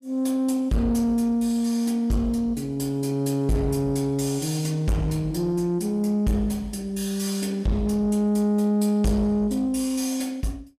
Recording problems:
distorted audio; soft clipping, signal-to-distortion ratio 10 dB

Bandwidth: 14.5 kHz